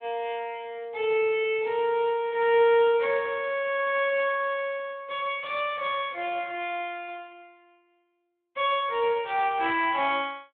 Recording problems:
phone line; 300 Hz to 3.5 kHz, Speex

